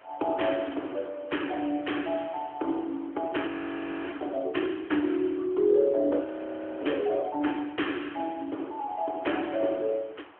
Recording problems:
phone line; 240 Hz to 3.2 kHz, AMR-NB
background hiss; SNR 25 dB
frozen audio; at 3.5 s for 0.5 s and at 6 s for 0.5 s

